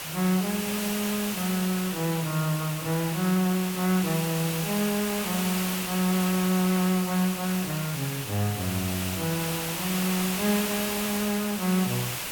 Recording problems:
background hiss; SNR 4 dB

